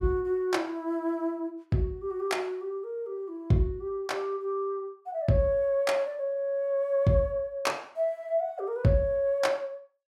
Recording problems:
none

